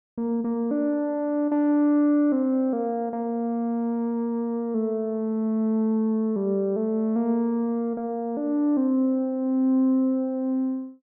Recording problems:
none

